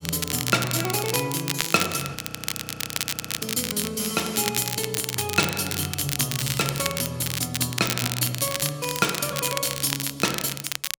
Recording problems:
crackle; vinyl, SNR 3 dB
audio freezing; at 2 s for 1.5 s

